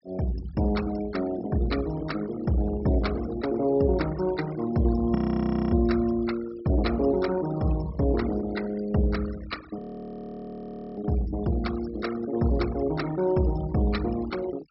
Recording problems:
treble missing; nothing above 5.4 kHz
noise reduction artefacts; signal-to-artefact ratio 17 dB
audio freezing; at 5 s for 0.5 s and at 10 s for 1 s

